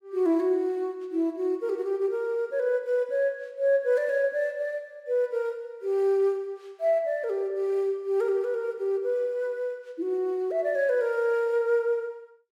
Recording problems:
none

